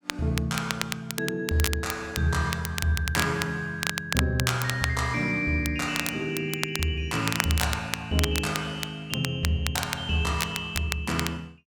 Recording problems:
crackle; vinyl, SNR 5 dB

